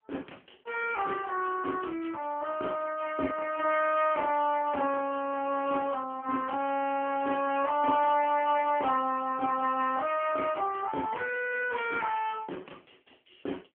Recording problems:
phone line; 220 Hz to 3.2 kHz, AMR-NB

